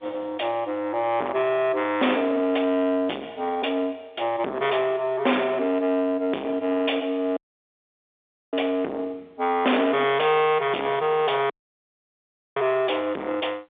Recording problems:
telephone audio; 260 Hz to 3.6 kHz, G.711
distorted audio; soft clipping, signal-to-distortion ratio 6 dB
dropout; at 7.5 s for 1 s and at 12 s for 1 s

